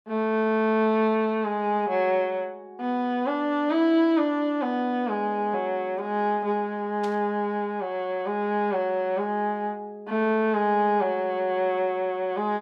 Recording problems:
burst of static; at 7 s; peak -12 dB vs average level

